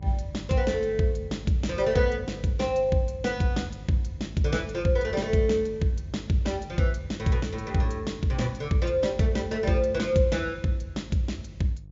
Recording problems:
treble cut off; nothing above 7.4 kHz
hum; 50 Hz, harmonics up to 350 Hz, SNR 17 dB

